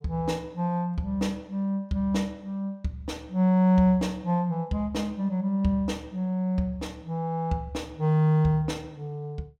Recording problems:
none

